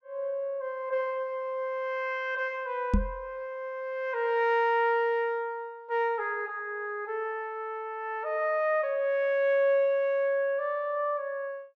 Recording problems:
microphone thump; at 3 s; peak +7 dB vs average level

